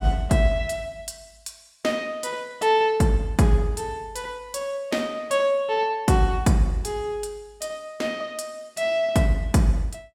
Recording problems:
none

